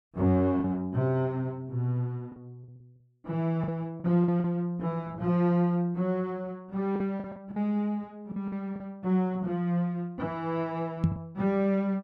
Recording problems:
lost packets; 6% of the sound replaced, filled with the last packet
knock on the microphone; at 11 s; peak +7 dB vs average level

